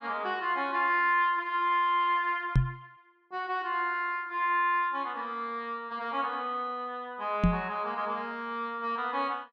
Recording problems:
microphone thump; at 2.5 s and at 7.5 s; peak +8 dB vs average level

